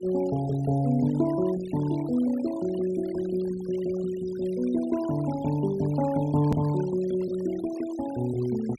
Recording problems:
denoising artefacts; signal-to-artefact ratio 19 dB
click at an edit; at 6.5 s

